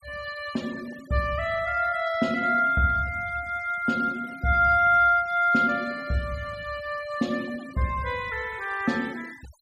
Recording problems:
noise reduction artefacts; signal-to-artefact ratio 23 dB

